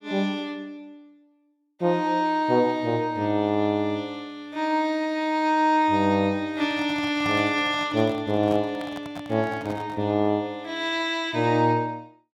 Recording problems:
handling noise; from 6.5 to 10 s; peak -6 dB vs average level

